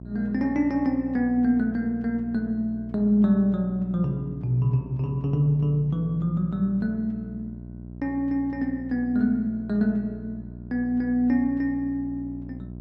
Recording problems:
hum; 60 Hz, harmonics up to 660 Hz, SNR 14 dB

